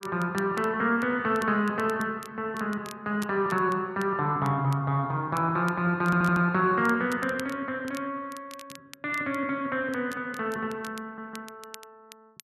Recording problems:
crackle; vinyl, SNR 22 dB
audio stuttering; at 6 s and at 11 s

